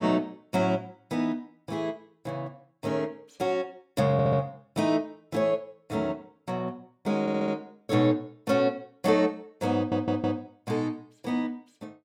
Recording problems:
stutter; at 4 s, at 7 s and at 10 s

